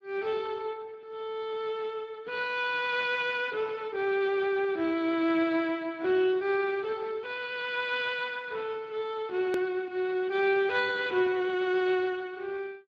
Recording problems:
lossy codec; Speex, log-spectral distance 3 dB, nothing above 13.1 kHz
click at an edit; at 9.5 s

